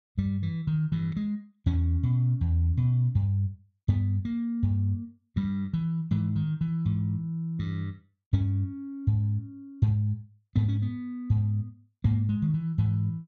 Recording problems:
none

